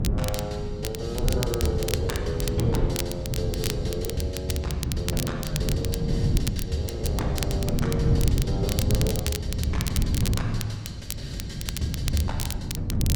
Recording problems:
hum; 50 Hz, harmonics up to 350 Hz, SNR 14 dB
wind noise; below 160 Hz, SNR -3 dB
crackling; vinyl, SNR 4 dB

